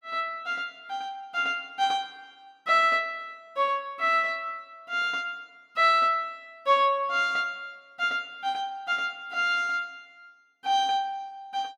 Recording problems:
none

